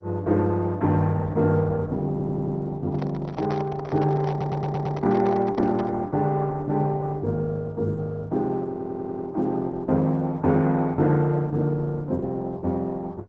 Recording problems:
codec artefacts; MP2, then Opus, log-spectral distance 2 dB
stutter; at 2 s, at 4.5 s and at 8.5 s
microphone handling noise; from 3 to 6 s; peak -5 dB vs average level

